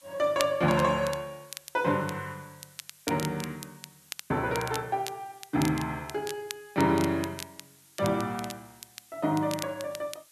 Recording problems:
hiss; slope +3 dB per octave, SNR 26 dB
crackling; vinyl, SNR 13 dB

